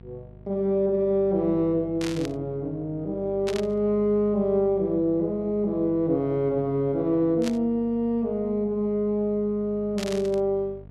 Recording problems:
electrical hum; 50 Hz, harmonics up to 750 Hz, SNR 20 dB
static burst; 4 times, first at 2 s; peak -5 dB vs average level

